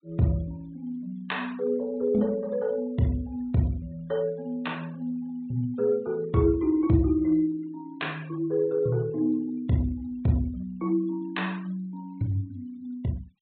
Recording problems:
treble missing; nothing above 4 kHz
noise reduction artefacts; signal-to-artefact ratio 28 dB

